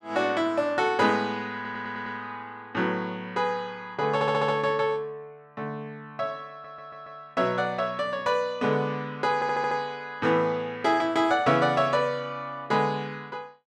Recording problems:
stutter; 4 times, first at 1.5 s

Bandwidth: 12.5 kHz